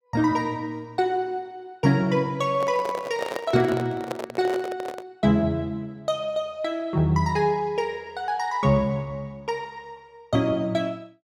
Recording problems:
microphone handling noise; from 2.5 to 5 s; peak -1 dB vs average level

